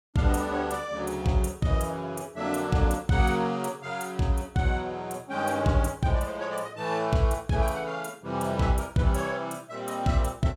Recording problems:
none

